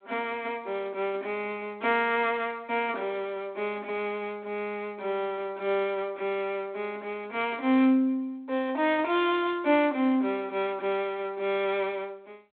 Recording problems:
phone line; 260 Hz to 3.7 kHz, G.726

